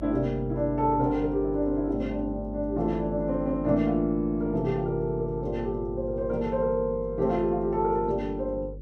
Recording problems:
hum; 50 Hz, harmonics up to 550 Hz, SNR 13 dB

